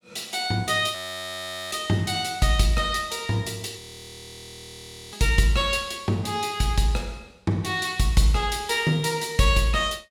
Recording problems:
audio freezing; at 1 s for 1 s and at 4 s for 1.5 s

